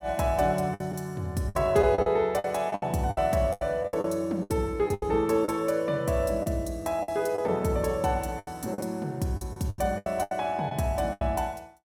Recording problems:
lost packets; 12% of the sound replaced, filled with the last packet

